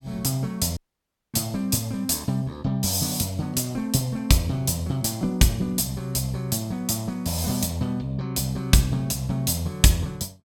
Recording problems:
dropout; at 1 s for 0.5 s

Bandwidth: 17.5 kHz